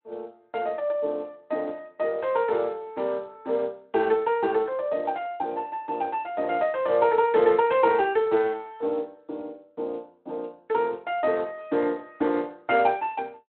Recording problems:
telephone audio; 300 Hz to 3.1 kHz, Speex

